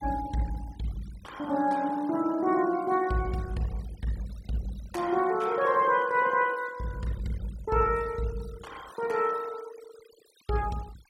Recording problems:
denoising artefacts; signal-to-artefact ratio 22 dB

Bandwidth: 16 kHz